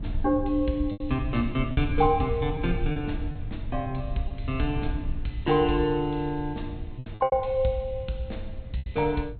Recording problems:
treble cut off; nothing above 4.2 kHz
low-frequency rumble; below 90 Hz, SNR 9 dB
packet loss; 6% of the sound replaced, filled with repeated pitch periods

